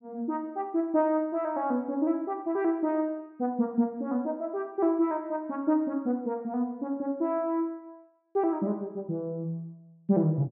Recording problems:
none

